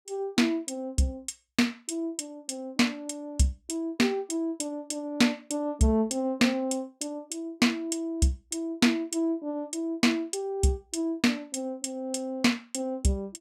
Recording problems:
none

